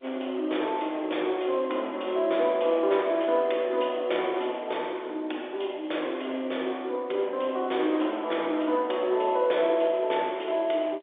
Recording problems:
phone line; 320 Hz to 3.6 kHz, G.711

